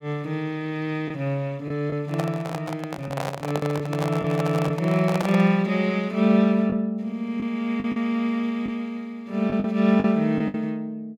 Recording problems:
packet loss; 5% of the sound replaced, filled with the last packet
handling noise; from 2 to 5.5 s; peak 0 dB vs average level

